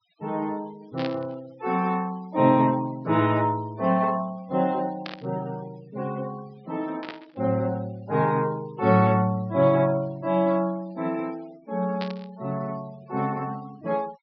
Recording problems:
low-pass filter; nothing above 5.5 kHz
denoising artefacts; signal-to-artefact ratio 25 dB
static burst; 4 times, first at 1 s; peak -5 dB vs average level

